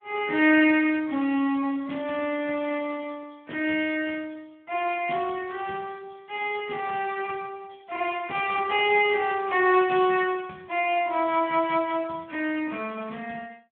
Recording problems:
phone line; 190 Hz to 3.3 kHz, Speex

